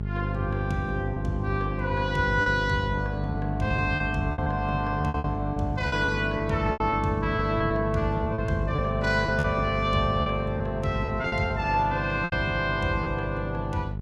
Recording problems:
hum; 50 Hz, harmonics up to 450 Hz, SNR 5 dB
packet loss; 8% of the sound replaced, filled with repeated pitch periods

